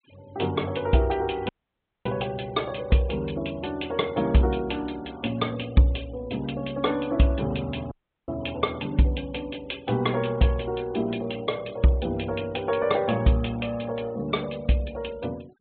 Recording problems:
low-pass filter; nothing above 4 kHz
noise reduction artefacts; signal-to-artefact ratio 25 dB
dropout; at 1.5 s for 0.5 s and at 8 s

